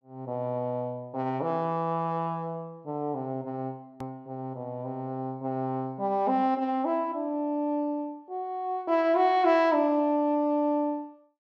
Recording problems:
edit click; at 4 s

